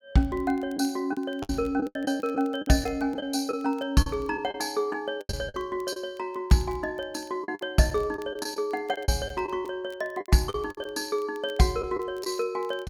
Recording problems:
crackling; vinyl, SNR 29 dB
packet loss; 9% of the sound replaced, filled with the last packet

